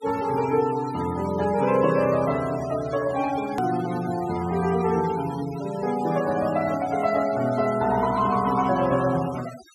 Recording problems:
noise reduction artefacts; signal-to-artefact ratio 16 dB
edit click; at 3.5 s

